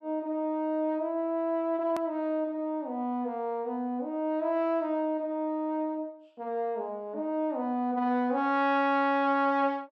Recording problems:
edit click; at 2 s

